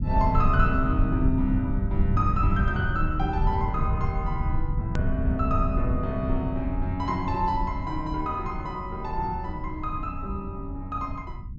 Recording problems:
low-pass filter; nothing above 7.6 kHz
rumble; below 110 Hz, SNR 0 dB
hard cut with a click; at 5 s

